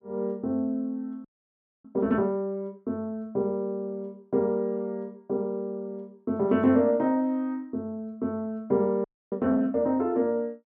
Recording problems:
audio freezing; at 1.5 s for 0.5 s and at 9 s

